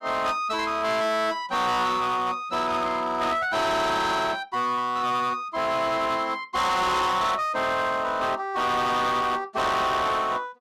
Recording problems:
distortion; hard clipping, uneven, signal-to-distortion ratio 7 dB

